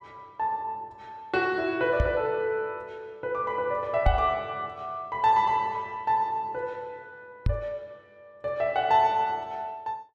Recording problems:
microphone thump; at 2 s, at 4 s and at 7.5 s; peak +7 dB vs average level

